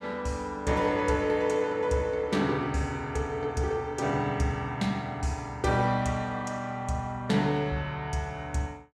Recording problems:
none

